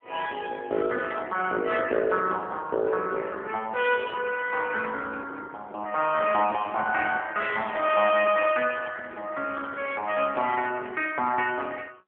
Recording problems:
phone line; 220 Hz to 3.3 kHz, AMR-NB
static burst; 4 times, first at 1 s; peak -13 dB vs average level

